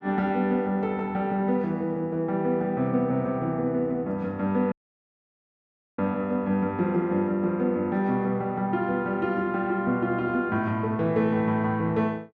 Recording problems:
audio cutting out; at 4.5 s for 1.5 s

